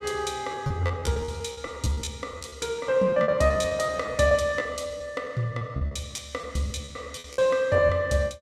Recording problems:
lost packets; 17% of the sound replaced, filled with repeated pitch periods

